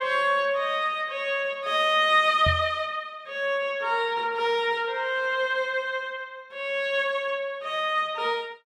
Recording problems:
microphone bump; at 2.5 s; peak +1 dB vs average level

